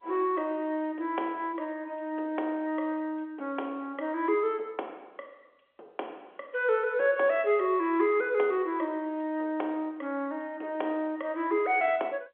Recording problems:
phone line; 280 Hz to 3.5 kHz, G.711

